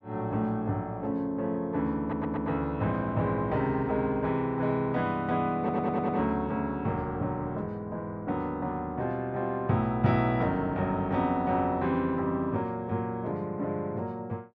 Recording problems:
audio stuttering; at 2 s and at 5.5 s

